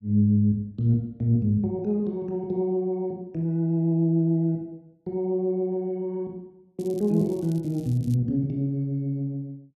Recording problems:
crackling; from 7 to 8 s; loose cable, SNR 27 dB

